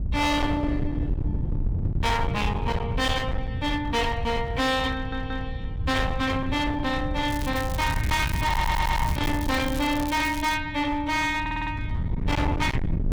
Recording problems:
distorted audio; hard clipping, signal-to-distortion ratio 7 dB
wind on the microphone; below 160 Hz, SNR 4 dB
stutter; at 5 s, at 8.5 s and at 11 s
crackling; from 7.5 to 11 s; loose cable, SNR 12 dB

